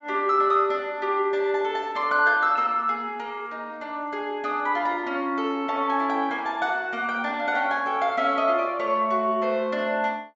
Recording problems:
treble missing; nothing above 7.6 kHz

